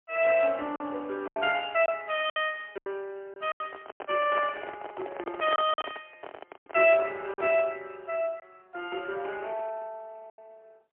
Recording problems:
telephone audio; 260 Hz to 3.3 kHz, AMR-NB, then MP3
packet loss; 7% of the sound replaced, filled with silence
handling noise; from 3.5 to 7.5 s; peak -2 dB vs average level

